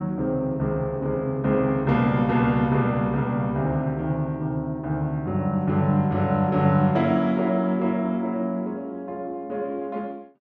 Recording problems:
none

